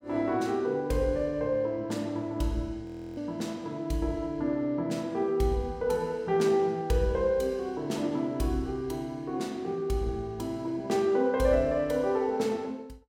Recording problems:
frozen audio; at 3 s

